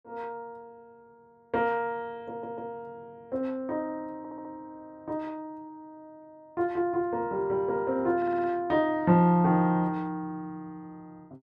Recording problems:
audio stuttering; at 2.5 s, at 4 s and at 8 s

